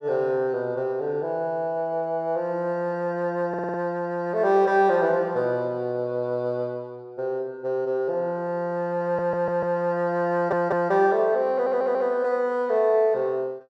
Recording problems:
stutter; 4 times, first at 3.5 s

